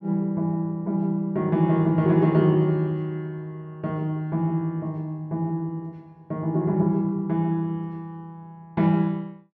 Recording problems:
none

